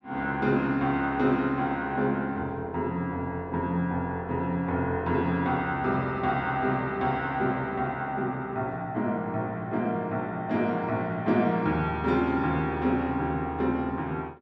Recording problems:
none

